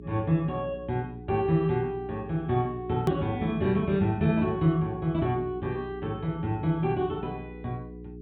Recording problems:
treble cut off; nothing above 4 kHz
hum; 60 Hz, harmonics up to 420 Hz, SNR 14 dB
edit click; at 3 s

